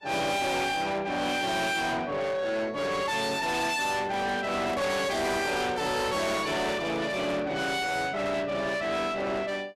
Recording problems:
lossy compression; Vorbis, log-spectral distance 3 dB, nothing above 13.1 kHz
distortion; soft clipping, signal-to-distortion ratio 7 dB
microphone handling noise; from 4 to 7.5 s; peak -2 dB vs average level

